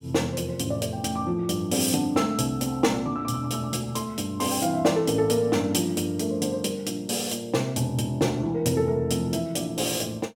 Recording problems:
none

